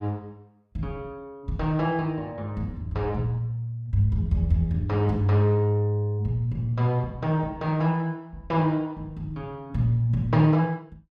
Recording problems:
none

